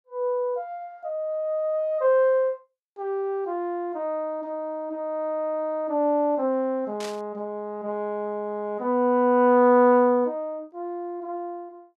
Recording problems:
burst of static; at 7 s; peak -9 dB vs average level

